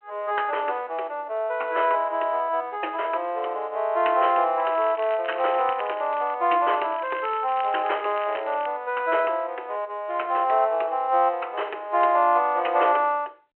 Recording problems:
phone line; 320 Hz to 3.1 kHz, G.726
crackling; from 4.5 to 6.5 s and from 6.5 to 8.5 s; loose cable, SNR 19 dB

